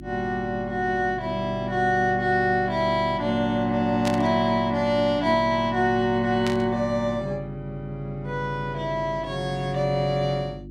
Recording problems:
hum; 50 Hz, harmonics up to 350 Hz, SNR 16 dB
burst of static; at 4 s and at 6.5 s; peak -3 dB vs average level

